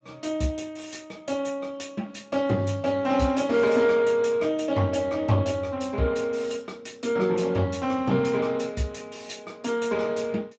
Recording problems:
lossy compression; Speex, log-spectral distance 4 dB, nothing above 7.6 kHz

